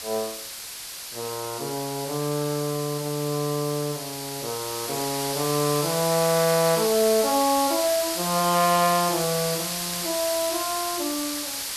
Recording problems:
hiss; slope +2 dB per octave, SNR 4 dB

